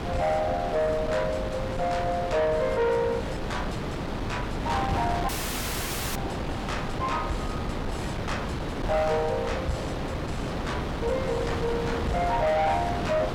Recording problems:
distortion; soft clipping, signal-to-distortion ratio 12 dB
wind on the microphone; below 820 Hz, SNR 3 dB
audio cutting out; at 5.5 s for 1 s

